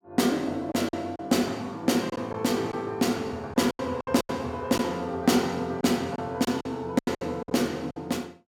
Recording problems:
lost packets; 9% of the sound replaced, filled with silence

